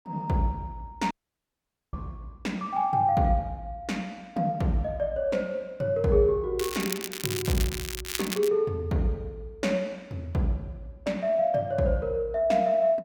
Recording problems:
dropout; at 1 s for 1 s
crackling; from 6.5 to 8.5 s; loose cable, SNR 6 dB

